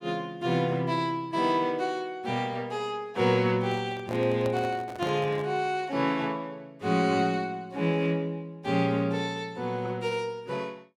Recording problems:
microphone handling noise; from 3.5 to 5.5 s; peak -5 dB vs average level

